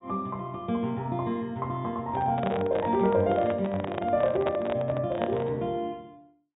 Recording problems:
treble missing; nothing above 4 kHz
handling noise; from 2 to 5.5 s; peak +1 dB vs average level

